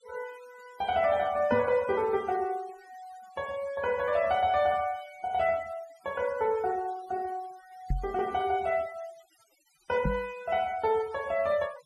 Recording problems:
noise reduction artefacts; signal-to-artefact ratio 23 dB
knock on the microphone; at 1.5 s, at 8 s and at 10 s; peak +3 dB vs average level

